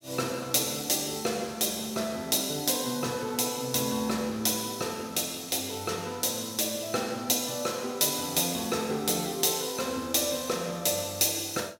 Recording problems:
none

